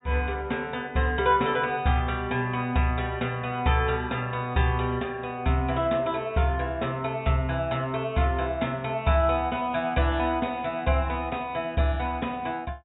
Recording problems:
treble missing; nothing above 4 kHz

